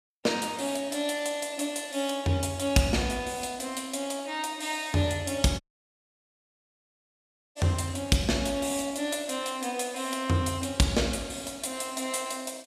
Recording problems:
audio cutting out; at 5.5 s for 2 s

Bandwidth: 14.5 kHz